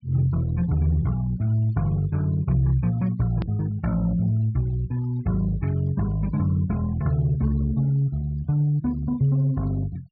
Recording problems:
treble cut off; nothing above 5.5 kHz
denoising artefacts; signal-to-artefact ratio 26 dB
click at an edit; at 3.5 s

